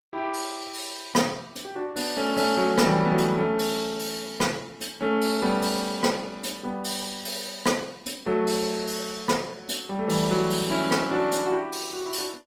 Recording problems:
lossy compression; Opus, log-spectral distance 5 dB

